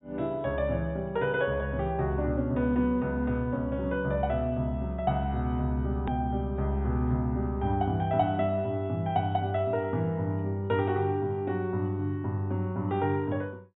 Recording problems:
treble cut off; nothing above 4 kHz
click at an edit; at 6 s

